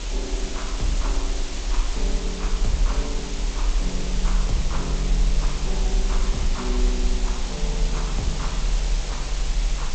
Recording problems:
codec artefacts; G.722, log-spectral distance 9 dB, nothing above 7.6 kHz
background hiss; SNR 0 dB
low-frequency rumble; below 40 Hz, strongest tone 38 Hz, SNR -6 dB

